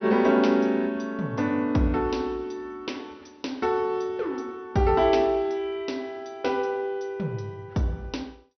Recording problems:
treble missing; nothing above 6 kHz

